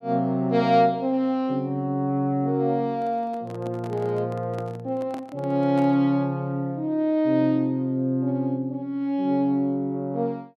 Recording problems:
microphone handling noise; from 3 to 6 s; peak -11 dB vs average level

